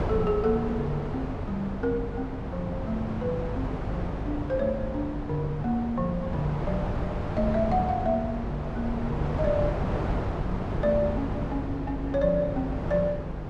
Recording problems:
hum; 50 Hz, harmonics up to 500 Hz, SNR 9 dB
wind noise; below 580 Hz, SNR 4 dB

